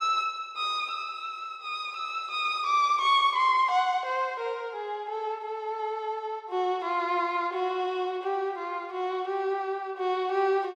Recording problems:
none

